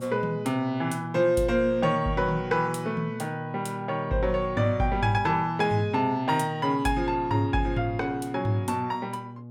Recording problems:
electrical hum; 60 Hz, harmonics up to 840 Hz, SNR 14 dB

